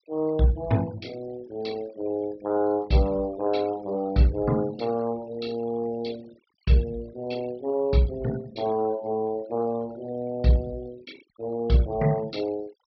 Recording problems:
treble cut off; nothing above 5.5 kHz
noise reduction artefacts; signal-to-artefact ratio 21 dB

